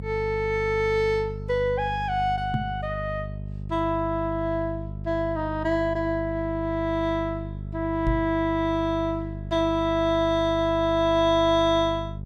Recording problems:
hum; 50 Hz, harmonics up to 450 Hz, SNR 10 dB
microphone thump; at 2.5 s and at 8 s; peak +1 dB vs average level

